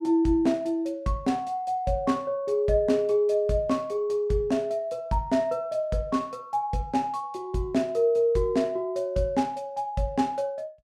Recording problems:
none

